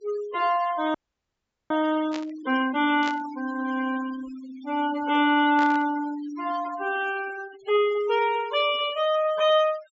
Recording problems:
treble missing; nothing above 8 kHz
denoising artefacts; signal-to-artefact ratio 17 dB
audio freezing; at 1 s for 1 s
burst of static; at 2 s, at 3 s and at 5.5 s; peak -7 dB vs average level

